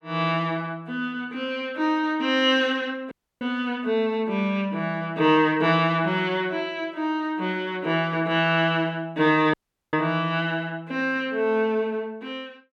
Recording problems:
audio cutting out; at 3 s and at 9.5 s

